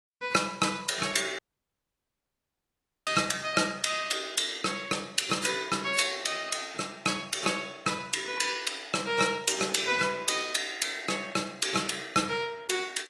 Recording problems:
lossy codec; AAC, log-spectral distance 6 dB, nothing above 11 kHz
dropout; at 1.5 s for 1.5 s

